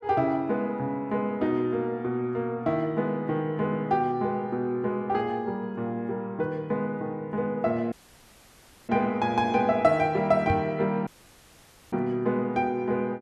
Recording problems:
audio cutting out; at 8 s for 1 s and at 11 s for 1 s
knock on the microphone; at 11 s; peak +1 dB vs average level

